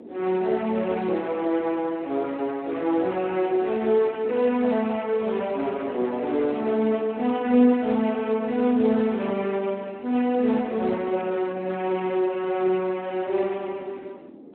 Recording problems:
telephone audio; 220 Hz to 3.1 kHz, Speex
wind noise; below 410 Hz, SNR 20 dB

